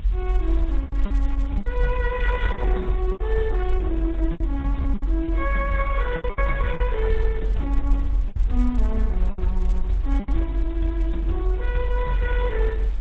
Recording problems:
lossy codec; AAC, then Opus, log-spectral distance 2 dB
hiss; SNR 26 dB
low-frequency rumble; below 48 Hz, strongest tone 46 Hz, SNR -3 dB
packet loss; 8% of the sound replaced, filled with repeated pitch periods

